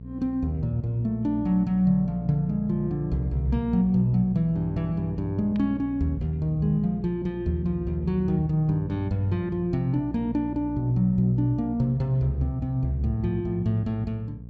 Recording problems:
electrical hum; 60 Hz, harmonics up to 480 Hz, SNR 13 dB

